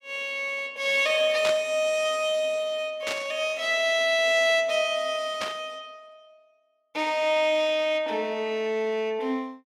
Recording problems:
static burst; at 1.5 s, at 3 s and at 5.5 s; peak -1 dB vs average level

